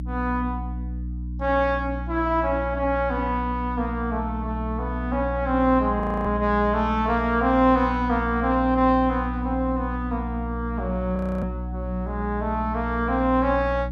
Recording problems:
mains hum; 60 Hz, harmonics up to 300 Hz, SNR 7 dB
audio freezing; at 6 s and at 11 s

